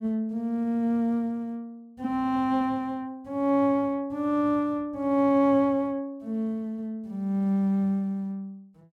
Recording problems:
none

